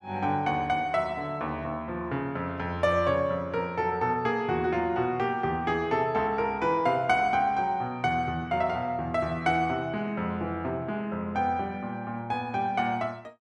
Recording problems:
none

